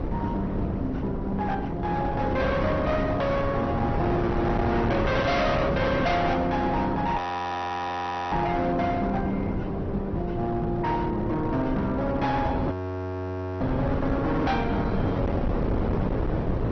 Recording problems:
lossy compression; Opus, then MP2, log-spectral distance 2 dB, nothing above 6 kHz
distortion; hard clipping, signal-to-distortion ratio 7 dB
wind noise; below 470 Hz, SNR 3 dB
audio freezing; at 7 s for 1 s and at 13 s for 1 s

